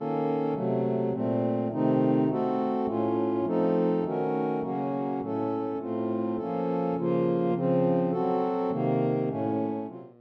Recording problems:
hum; 60 Hz, harmonics up to 1.3 kHz, SNR 27 dB

